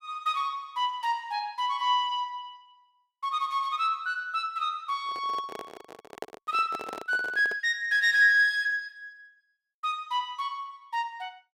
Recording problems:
handling noise; from 5 to 7.5 s; peak -5 dB vs average level

